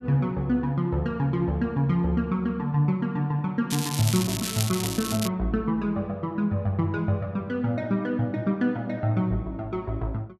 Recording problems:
crackle; from 3.5 to 5.5 s; loose cable, SNR 5 dB

